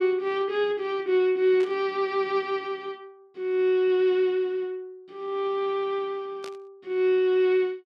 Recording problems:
static burst; at 1.5 s and at 6.5 s; peak -12 dB vs average level

